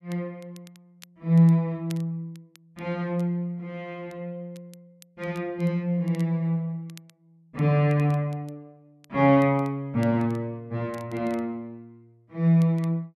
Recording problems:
crackle; vinyl, SNR 30 dB

